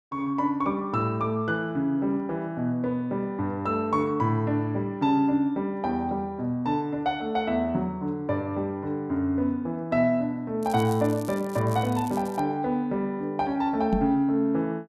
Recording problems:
crackle; from 11 to 12 s; loose cable, SNR 20 dB
knock on the microphone; at 14 s; peak +5 dB vs average level

